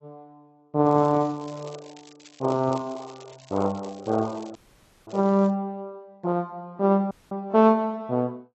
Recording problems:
lossy compression; AAC, log-spectral distance 4 dB, nothing above 6.5 kHz
crackling; from 1 to 5.5 s; loose cable, SNR 26 dB
audio cutting out; at 4.5 s for 0.5 s and at 7 s

